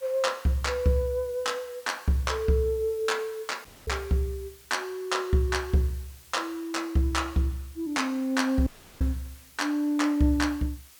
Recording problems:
hiss; slope +1 dB per octave, SNR 23 dB
dropout; at 3.5 s and at 8.5 s

